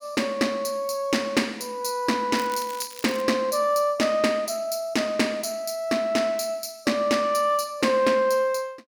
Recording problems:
crackling; at 2.5 s; loose cable, SNR 16 dB

